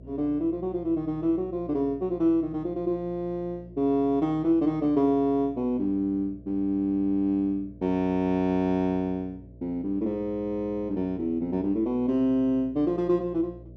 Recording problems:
electrical hum; 60 Hz, harmonics up to 660 Hz, SNR 21 dB

